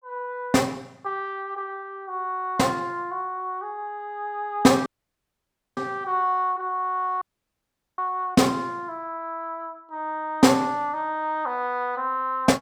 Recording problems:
dropout; at 5 s for 1 s and at 7 s for 1 s

